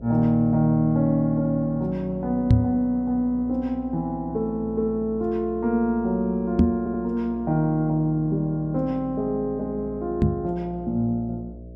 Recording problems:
hum; 60 Hz, harmonics up to 660 Hz, SNR 17 dB
microphone thump; at 2.5 s, at 6.5 s and at 10 s; peak +9 dB vs average level
stutter; at 7 s

